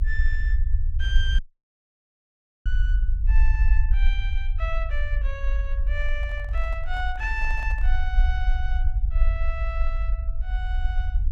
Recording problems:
low-frequency rumble; below 50 Hz, SNR -8 dB
audio cutting out; at 1.5 s for 1.5 s
microphone handling noise; from 6 to 8 s; peak -7 dB vs average level

